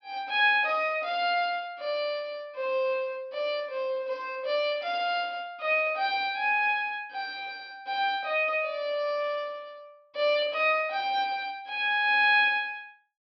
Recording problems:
treble missing; nothing above 5.5 kHz

